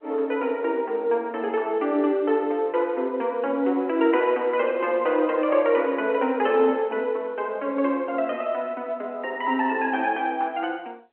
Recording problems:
telephone audio; 240 Hz to 3.2 kHz, G.711

